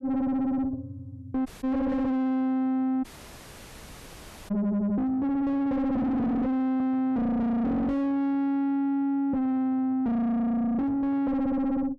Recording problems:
distorted audio; soft clipping, signal-to-distortion ratio 3 dB
audio cutting out; at 1.5 s and at 3 s for 1.5 s

